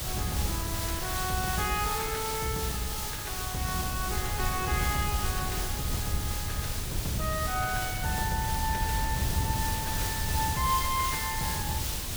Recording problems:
background hiss; slope 0 dB per octave, SNR 1 dB
wind on the microphone; below 120 Hz, SNR 4 dB

